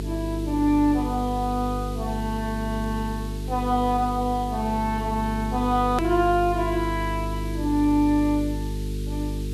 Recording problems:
electrical hum; 50 Hz, harmonics up to 450 Hz, SNR 6 dB
hiss; SNR 20 dB
hard cut with a click; at 6 s

